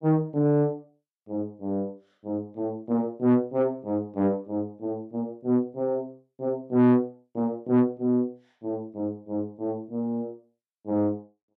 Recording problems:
distortion; soft clipping, signal-to-distortion ratio 11 dB

